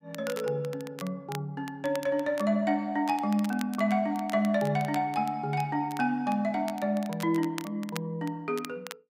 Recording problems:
crackling; vinyl, SNR 17 dB

